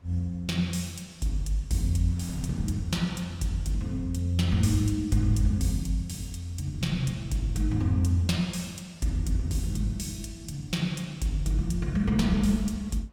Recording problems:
wind noise; below 700 Hz, SNR 30 dB

